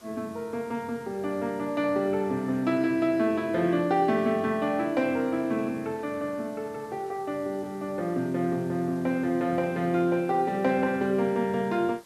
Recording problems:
hiss; slope -3 dB per octave, SNR 26 dB

